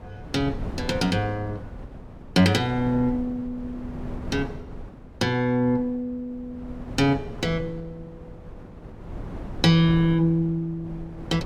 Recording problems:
wind noise; below 280 Hz, SNR 14 dB

